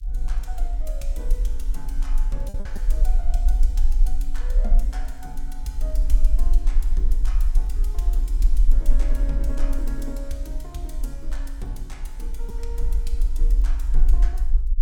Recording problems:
rumble; below 40 Hz, strongest tone 22 Hz, SNR -13 dB
crackling; vinyl, SNR 30 dB
lost packets; 0.8% of the sound replaced, filled with repeated pitch periods

